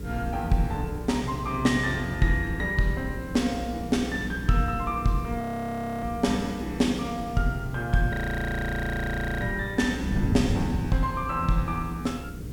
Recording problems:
hum; 60 Hz, harmonics up to 480 Hz, SNR 12 dB
hiss; SNR 23 dB
wind noise; below 220 Hz, SNR 10 dB
frozen audio; at 5.5 s for 0.5 s and at 8 s for 1.5 s

